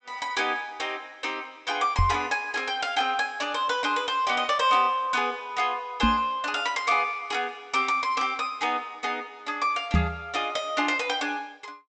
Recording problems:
low-pass filter; nothing above 8 kHz
microphone bump; at 2 s, at 6 s and at 10 s; peak +6 dB vs average level

